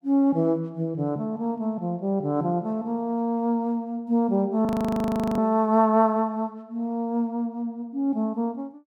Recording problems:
audio freezing; at 4.5 s for 0.5 s

